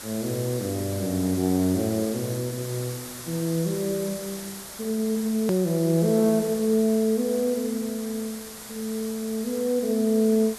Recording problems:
hiss; SNR 12 dB
edit click; at 5.5 s

